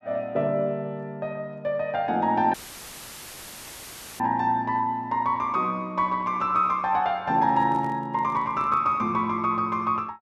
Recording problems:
dropout; at 2.5 s for 1.5 s; filled with static
microphone handling noise; from 7.5 to 9 s; peak -11 dB vs average level

